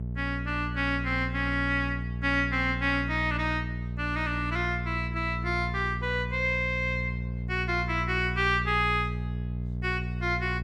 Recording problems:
hum; 60 Hz, harmonics up to 480 Hz, SNR 5 dB

